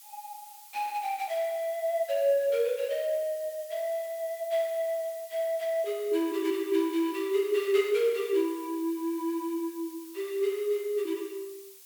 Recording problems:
background hiss; slope +4 dB per octave, SNR 18 dB

